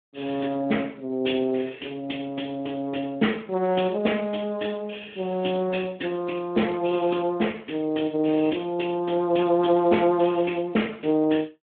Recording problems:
telephone audio; 150 Hz to 3.5 kHz, Speex

